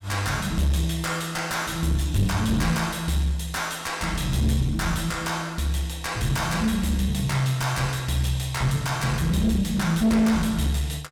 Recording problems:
distorted audio; soft clipping, signal-to-distortion ratio 10 dB

